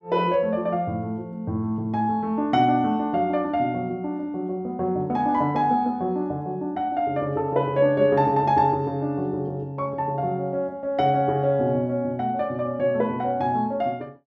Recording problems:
none

